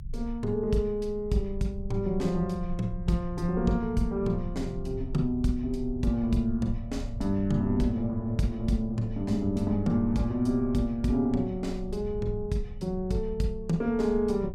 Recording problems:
rumble; below 74 Hz, strongest tone 28 Hz, SNR 12 dB

